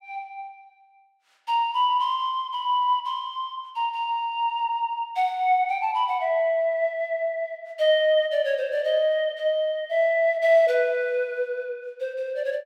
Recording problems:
none

